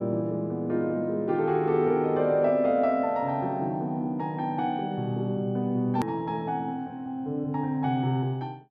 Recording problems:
edit click; at 6 s

